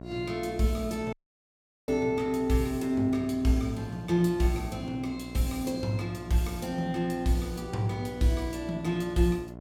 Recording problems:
hum; 60 Hz, harmonics up to 1.4 kHz, SNR 14 dB
dropout; at 1 s for 1 s

